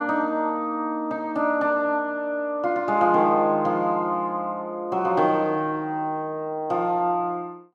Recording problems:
none

